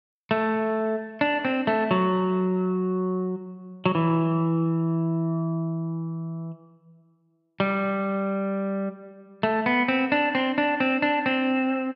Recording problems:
none

